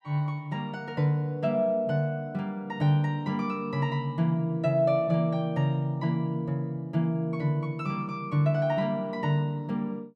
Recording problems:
none

